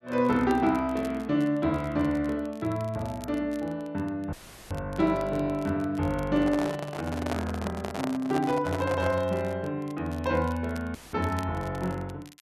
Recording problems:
crackling; vinyl, SNR 24 dB
audio cutting out; at 4.5 s and at 11 s; filled with static
microphone handling noise; from 6.5 to 9.5 s; peak +1 dB vs average level

